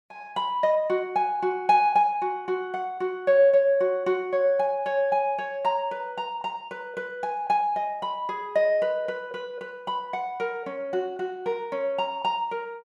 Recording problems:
none

